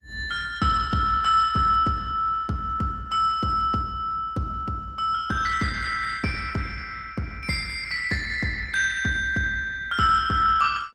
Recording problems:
codec artefacts; Opus, log-spectral distance 4 dB, nothing above 15.5 kHz

